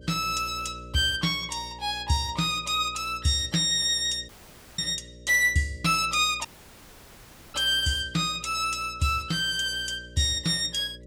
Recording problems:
hum; 60 Hz, harmonics up to 600 Hz, SNR 21 dB
audio cutting out; at 4.5 s and at 6.5 s for 1 s

